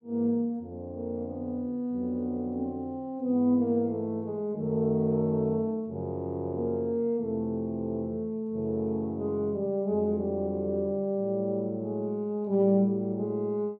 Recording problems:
none

